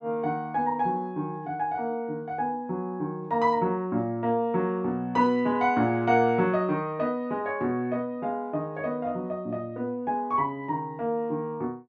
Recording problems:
none

